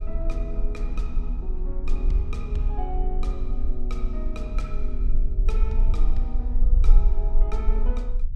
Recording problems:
low-frequency rumble; below 40 Hz, strongest tone 28 Hz, SNR -9 dB

